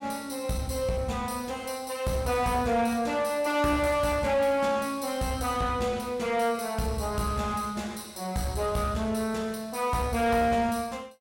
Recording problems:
distortion; soft clipping, signal-to-distortion ratio 10 dB

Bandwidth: 16.5 kHz